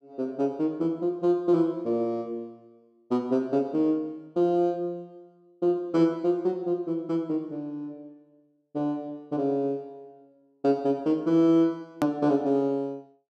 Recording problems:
hard cut with a click; at 12 s

